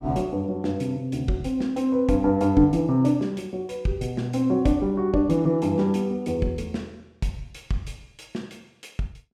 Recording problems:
none

